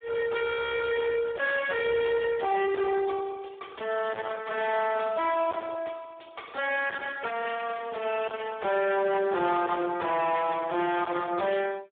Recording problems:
phone line; 300 Hz to 2.3 kHz, Speex
distorted audio; soft clipping, signal-to-distortion ratio 7 dB

